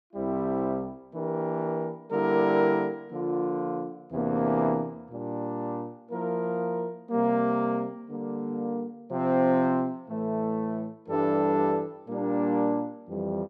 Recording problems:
none

